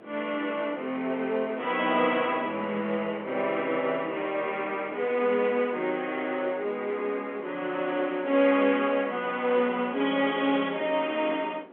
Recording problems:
phone line; 280 Hz to 3.4 kHz, G.711
wind on the microphone; below 740 Hz, SNR 21 dB

